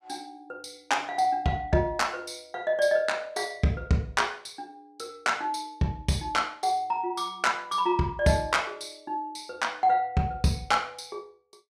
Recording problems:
none

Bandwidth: 15.5 kHz